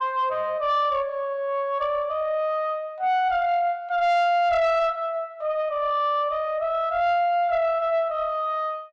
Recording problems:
distortion; soft clipping, signal-to-distortion ratio 12 dB

